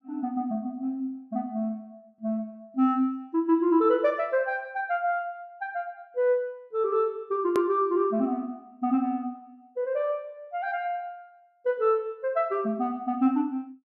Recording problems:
hard cut with a click; at 7.5 s

